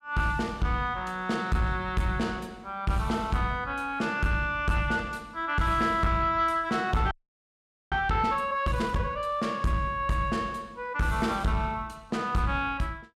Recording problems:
distortion; soft clipping, signal-to-distortion ratio 11 dB
audio freezing; at 7 s for 1 s

